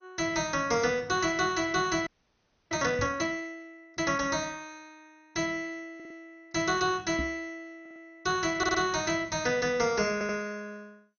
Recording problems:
codec artefacts; MP2, log-spectral distance 5 dB, nothing above 6.3 kHz
frozen audio; at 2 s for 0.5 s
microphone thump; at 3 s and at 7 s; peak -3 dB vs average level
audio stuttering; 4 times, first at 6 s

